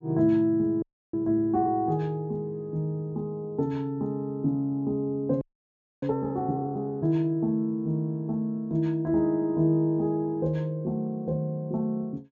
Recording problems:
low-pass filter; nothing above 8 kHz
frozen audio; at 1 s and at 5.5 s for 0.5 s

